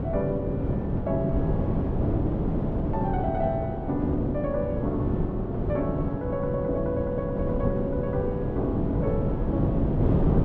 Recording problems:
wind on the microphone; below 310 Hz, SNR -2 dB

